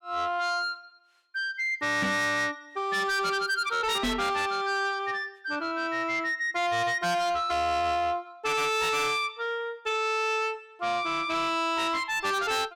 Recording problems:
distortion; soft clipping, signal-to-distortion ratio 8 dB
microphone bump; at 2 s and at 4 s; peak +2 dB vs average level

